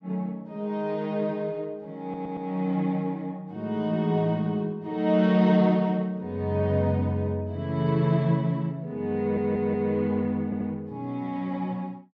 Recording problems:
audio stuttering; at 2 s, at 9 s and at 10 s

